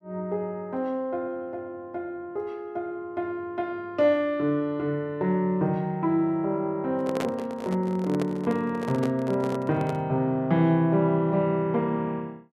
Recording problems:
microphone handling noise; from 7 to 10 s; peak +1 dB vs average level

